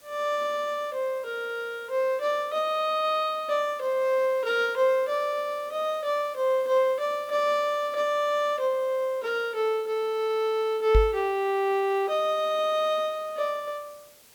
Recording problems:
hiss; slope -1 dB per octave, SNR 26 dB
microphone thump; at 11 s; peak +6 dB vs average level

